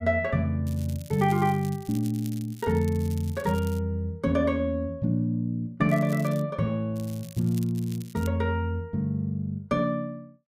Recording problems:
crackling; from 0.5 to 4 s, at 6 s and from 7 to 8.5 s; loose cable, SNR 20 dB

